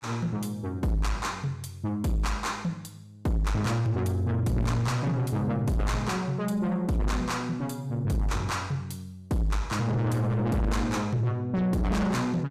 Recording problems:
distorted audio; soft clipping, signal-to-distortion ratio 6 dB

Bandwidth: 14.5 kHz